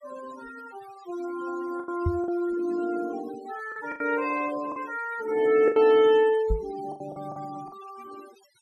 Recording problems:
noise reduction artefacts; signal-to-artefact ratio 19 dB
packet loss; 7% of the sound replaced, filled with the last packet
microphone thump; at 2 s and at 6.5 s; peak +2 dB vs average level

